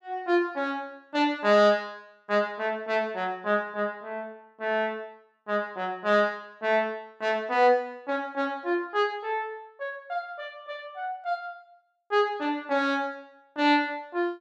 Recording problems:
none

